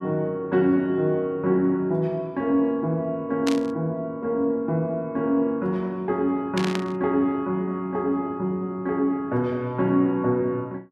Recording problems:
burst of static; at 3.5 s and at 6.5 s; peak -1 dB vs average level

